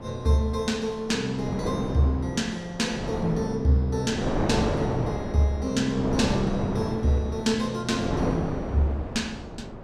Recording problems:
wind noise; below 580 Hz, SNR 5 dB

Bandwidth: 15.5 kHz